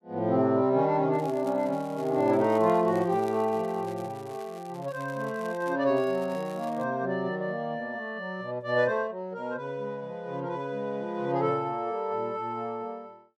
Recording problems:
crackling; from 1 to 5.5 s and at 6 s; loose cable, SNR 24 dB

